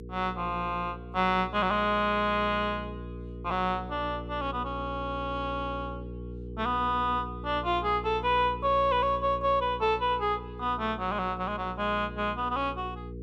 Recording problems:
electrical hum; 60 Hz, harmonics up to 480 Hz, SNR 12 dB

